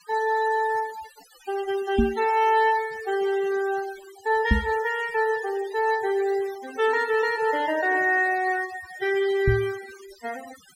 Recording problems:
denoising artefacts; signal-to-artefact ratio 18 dB
microphone thump; at 2 s, at 4.5 s and at 9.5 s; peak +6 dB vs average level

